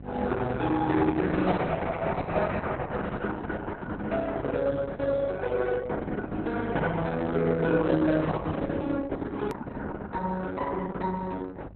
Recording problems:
codec artefacts; Opus, log-spectral distance 3 dB
mains hum; 50 Hz, harmonics up to 600 Hz, SNR 16 dB
hard cut with a click; at 9.5 s

